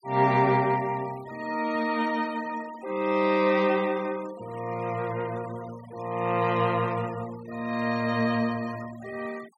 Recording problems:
noise reduction artefacts; signal-to-artefact ratio 20 dB

